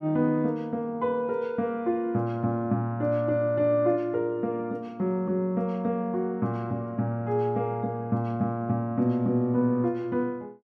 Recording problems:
none

